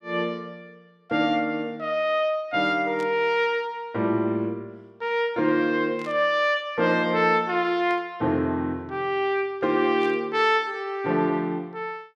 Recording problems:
static burst; 4 times, first at 3 s; peak -15 dB vs average level

